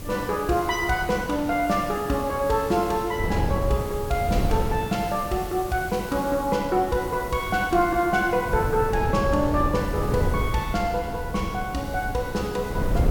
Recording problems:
hiss; SNR 18 dB
wind noise; below 210 Hz, SNR 7 dB

